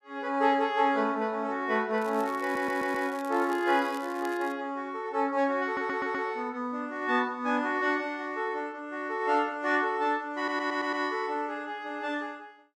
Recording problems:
crackle; from 2 to 4.5 s; loose cable, SNR 21 dB
stutter; at 2.5 s, at 5.5 s and at 10 s

